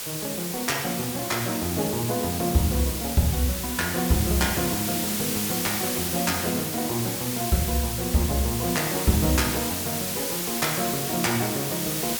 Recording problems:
hiss; slope +1 dB per octave, SNR 1 dB

